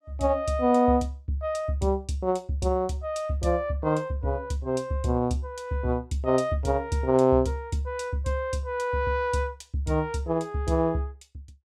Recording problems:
none

